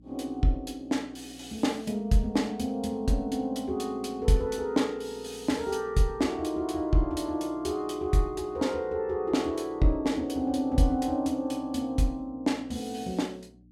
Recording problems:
hum; 60 Hz, harmonics up to 300 Hz, SNR 25 dB

